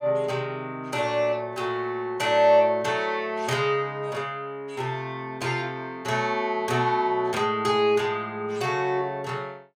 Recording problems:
none

